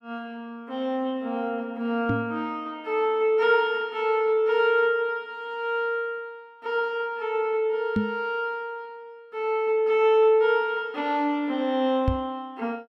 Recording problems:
microphone thump; at 2 s, at 8 s and at 12 s; peak +3 dB vs average level

